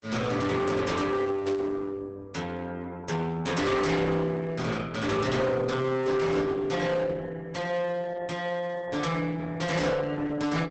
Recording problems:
lossy codec; Opus, log-spectral distance 3 dB, nothing above 8 kHz
distortion; hard clipping, uneven, signal-to-distortion ratio 7 dB
static burst; at 1.5 s; peak -9 dB vs average level

